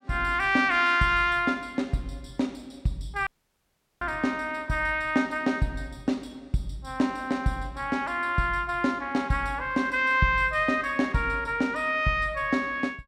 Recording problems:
audio cutting out; at 3.5 s for 0.5 s

